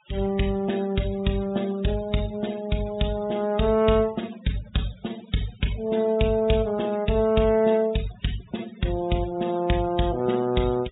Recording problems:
low-pass filter; nothing above 4 kHz
denoising artefacts; signal-to-artefact ratio 20 dB

